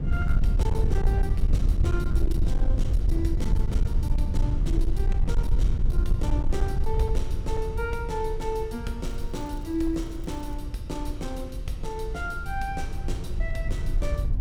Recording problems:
distortion; hard clipping, uneven, signal-to-distortion ratio 12 dB
low-frequency rumble; below 70 Hz, SNR -5 dB
crackling; from 9 to 11 s; loose cable, SNR 25 dB

